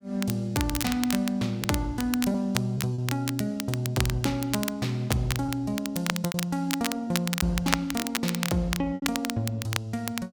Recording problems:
crackle; vinyl, SNR 5 dB
lost packets; 4% of the sound replaced, filled with repeated pitch periods

